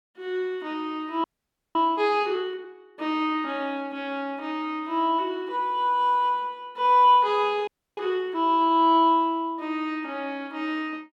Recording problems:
frozen audio; at 1 s for 0.5 s and at 7.5 s

